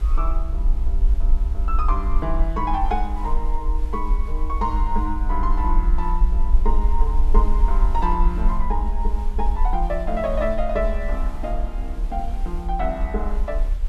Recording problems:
hiss; slope -5 dB per octave, SNR 19 dB
rumble; below 46 Hz, SNR -3 dB

